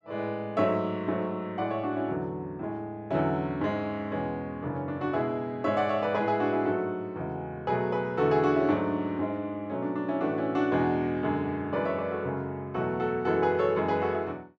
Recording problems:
none

